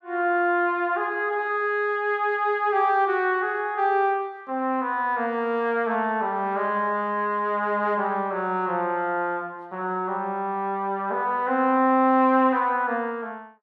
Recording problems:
none

